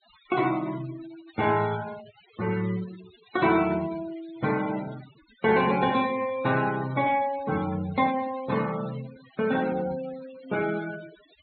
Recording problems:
low-pass filter; nothing above 4.3 kHz
denoising artefacts; signal-to-artefact ratio 18 dB

